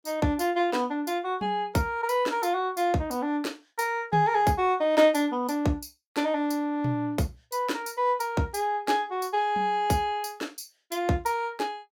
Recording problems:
none

